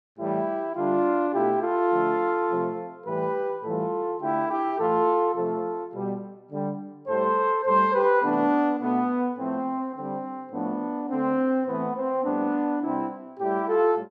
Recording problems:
none

